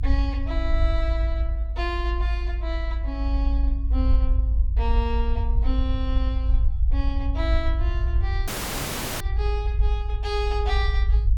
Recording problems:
low-frequency rumble; below 56 Hz, strongest tone 54 Hz, SNR -7 dB
dropout; at 8.5 s for 0.5 s

